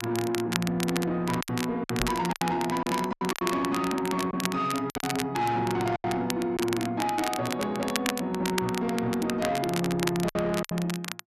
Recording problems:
distortion; soft clipping, signal-to-distortion ratio 11 dB
crackling; vinyl, SNR 7 dB
lost packets; 7% of the sound replaced, filled with silence
knock on the microphone; at 2 s; peak -1 dB vs average level

